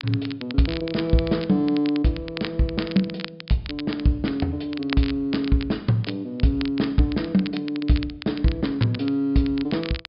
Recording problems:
treble missing; nothing above 5.2 kHz
crackle; vinyl, SNR 14 dB

